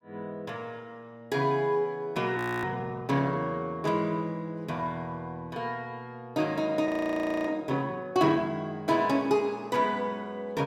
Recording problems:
audio freezing; at 2.5 s and at 7 s for 0.5 s

